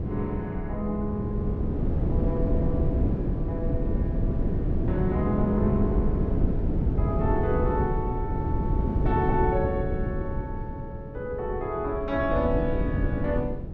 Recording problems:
wind noise; below 220 Hz, SNR -2 dB

